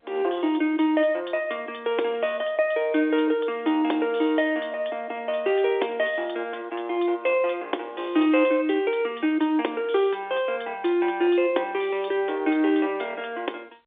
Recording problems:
telephone audio; 260 Hz to 3.6 kHz, G.711

